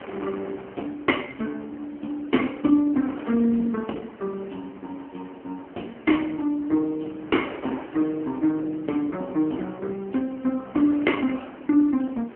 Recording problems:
telephone audio; 190 Hz to 3.1 kHz, AMR-NB
wind noise; below 1.2 kHz, SNR 17 dB

